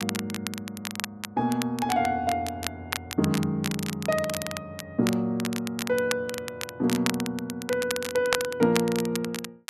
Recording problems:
crackling; vinyl, SNR 7 dB

